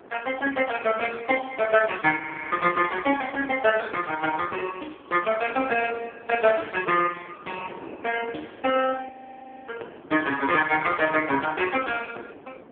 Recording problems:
phone line; 280 Hz to 3.2 kHz, AMR-NB
wind noise; below 690 Hz, SNR 21 dB
frozen audio; at 2 s and at 9 s for 0.5 s

